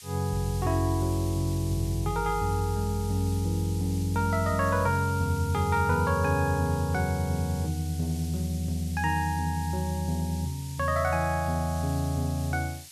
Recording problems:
background hiss; SNR 16 dB

